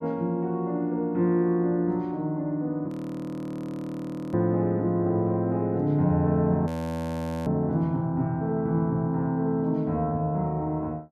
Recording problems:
frozen audio; at 3 s for 1.5 s and at 6.5 s for 1 s

